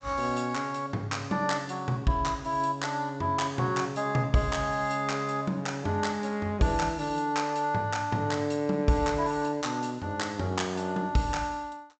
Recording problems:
low-pass filter; nothing above 8 kHz

